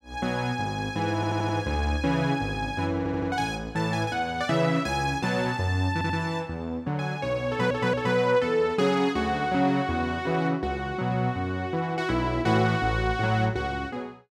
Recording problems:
stutter; 4 times, first at 1 s

